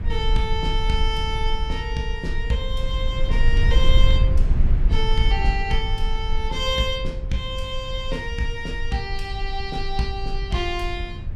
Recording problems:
low-frequency rumble; below 56 Hz, SNR -1 dB

